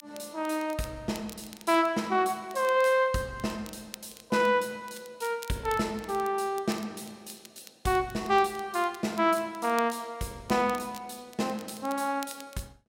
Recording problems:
crackle; vinyl, SNR 21 dB

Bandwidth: 16 kHz